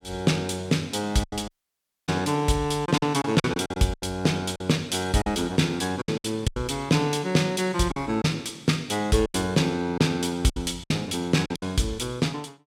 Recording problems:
packet loss; 9% of the sound replaced, filled with silence
dropout; at 1.5 s for 0.5 s

